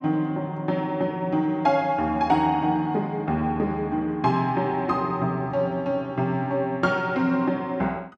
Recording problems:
none

